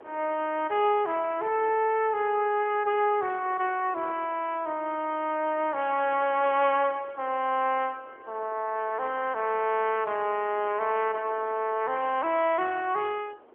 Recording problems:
telephone audio; 320 Hz to 3.3 kHz, AMR-NB
wind on the microphone; below 800 Hz, SNR 23 dB

